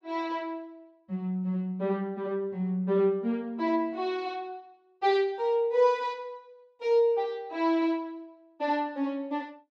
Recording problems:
none

